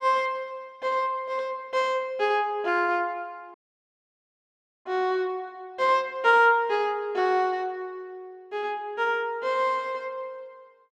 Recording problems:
audio cutting out; at 3.5 s for 1.5 s

